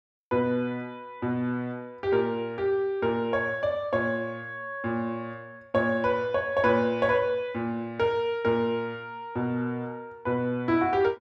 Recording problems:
none

